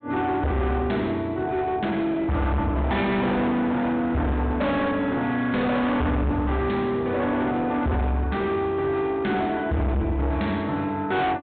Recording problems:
treble cut off; nothing above 4 kHz
distorted audio; hard clipping, signal-to-distortion ratio 6 dB

